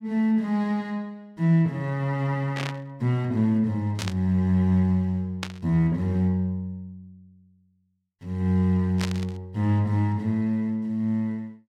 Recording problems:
burst of static; 4 times, first at 2.5 s; peak -2 dB vs average level

